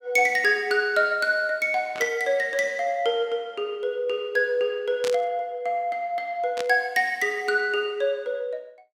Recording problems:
burst of static; at 2 s, at 5 s and at 6.5 s; peak -5 dB vs average level

